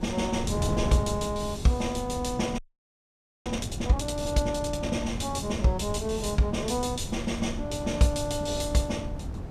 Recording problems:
wind on the microphone; below 210 Hz, SNR 7 dB
audio freezing; at 2.5 s for 1 s

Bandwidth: 15.5 kHz